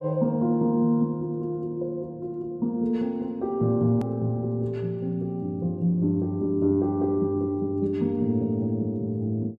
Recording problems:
edit click; at 4 s

